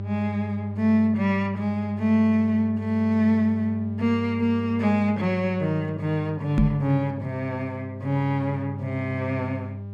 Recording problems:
mains hum; 50 Hz, harmonics up to 600 Hz, SNR 9 dB
microphone bump; at 6.5 s; peak +8 dB vs average level

